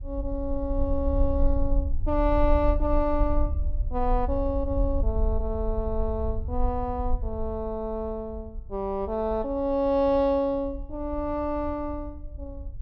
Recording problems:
wind noise; below 58 Hz, SNR 4 dB

